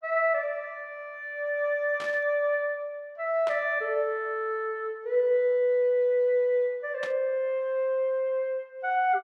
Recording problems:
burst of static; at 2 s, at 3.5 s and at 7 s; peak -8 dB vs average level

